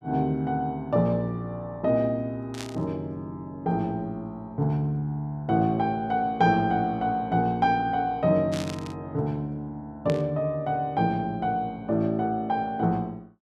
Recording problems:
burst of static; at 2.5 s, at 8.5 s and at 10 s; peak -6 dB vs average level

